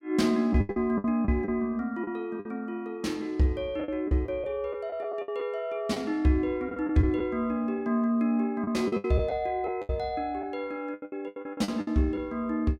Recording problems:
packet loss; 11% of the sound replaced, filled with the last packet

